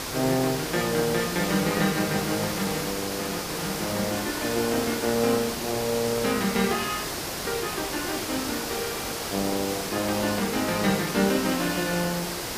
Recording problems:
hum; 50 Hz, harmonics up to 500 Hz, SNR 24 dB
hiss; slope -3 dB per octave, SNR 3 dB

